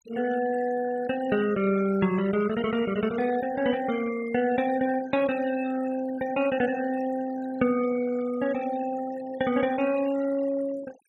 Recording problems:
denoising artefacts; signal-to-artefact ratio 16 dB

